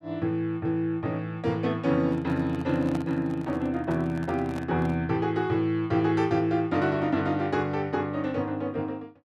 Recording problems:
handling noise; from 2 to 5 s; peak -6 dB vs average level

